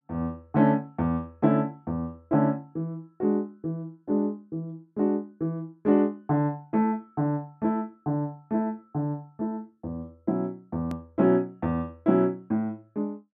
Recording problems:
click at an edit; at 11 s

